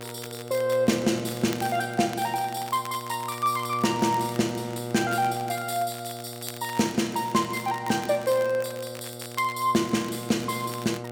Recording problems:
hum; 60 Hz, harmonics up to 2.2 kHz, SNR 11 dB
crackling; vinyl, SNR 17 dB

